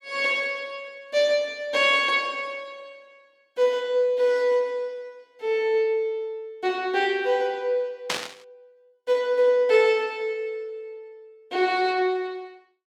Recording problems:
burst of static; at 8 s; peak +2 dB vs average level

